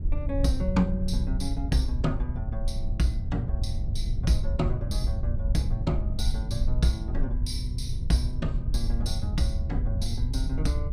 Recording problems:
low-frequency rumble; below 76 Hz, SNR 0 dB

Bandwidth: 15 kHz